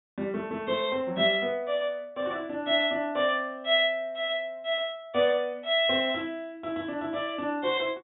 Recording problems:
treble missing; nothing above 3.7 kHz

